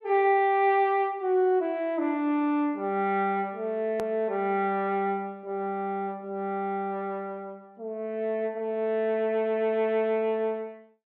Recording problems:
click at an edit; at 4 s

